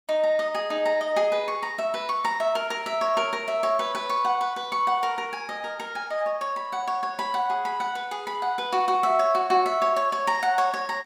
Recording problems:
none

